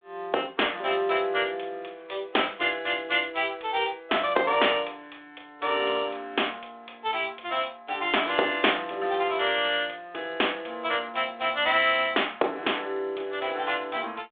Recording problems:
telephone audio; 300 Hz to 3.6 kHz, G.726

